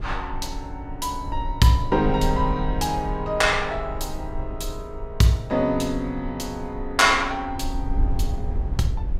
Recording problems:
low-frequency rumble; below 64 Hz, SNR 9 dB

